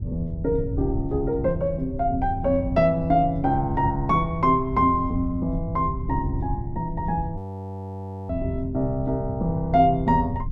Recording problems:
low-frequency rumble; below 110 Hz, SNR 9 dB
frozen audio; at 7.5 s for 1 s

